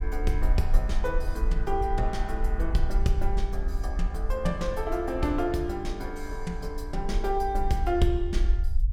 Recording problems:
rumble; below 46 Hz, SNR 1 dB

